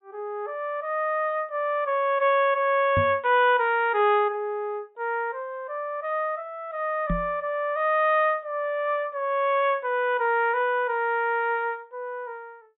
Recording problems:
low-pass filter; nothing above 4 kHz
microphone bump; at 3 s and at 7 s; peak 0 dB vs average level

